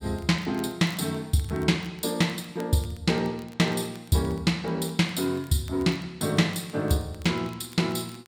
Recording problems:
crackle; vinyl, SNR 26 dB

